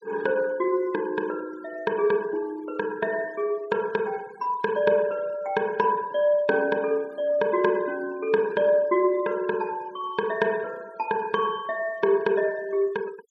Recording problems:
noise reduction artefacts; signal-to-artefact ratio 25 dB

